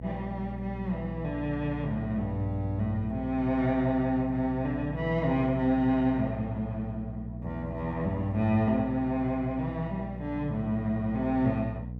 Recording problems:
hum; 60 Hz, harmonics up to 540 Hz, SNR 9 dB

